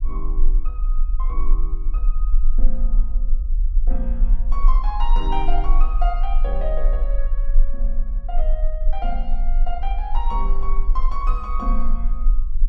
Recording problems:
low-frequency rumble; below 34 Hz, strongest tone 22 Hz, SNR -8 dB

